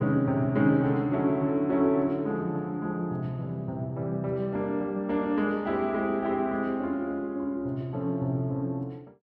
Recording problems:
none

